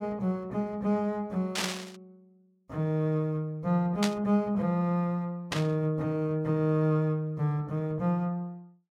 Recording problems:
burst of static; at 1.5 s, at 4 s and at 5.5 s; peak +3 dB vs average level

